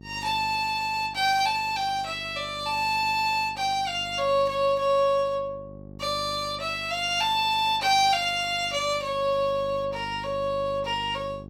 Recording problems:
electrical hum; 50 Hz, harmonics up to 800 Hz, SNR 20 dB

